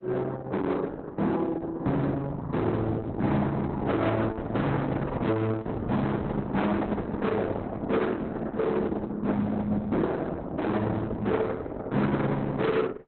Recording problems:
lossy codec; Opus, log-spectral distance 3 dB, nothing above 4 kHz
distortion; hard clipping, uneven, signal-to-distortion ratio 6 dB

